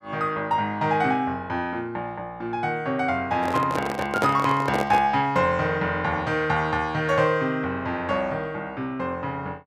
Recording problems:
handling noise; from 3.5 to 5 s; peak +3 dB vs average level

